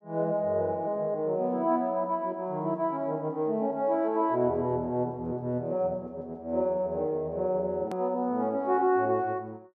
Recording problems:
hard cut with a click; at 8 s

